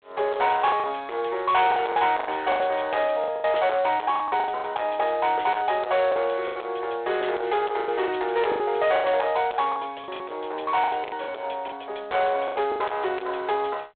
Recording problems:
phone line; 340 Hz to 3.7 kHz, G.726
distorted audio; soft clipping, signal-to-distortion ratio 10 dB
lost packets; 11% of the sound replaced, filled with the last packet

